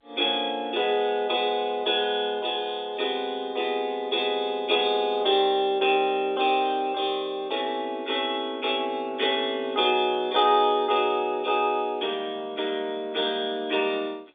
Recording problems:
telephone audio; 320 Hz to 3.6 kHz, G.711

